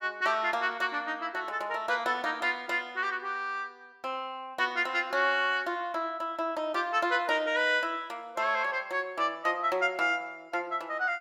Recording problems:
none

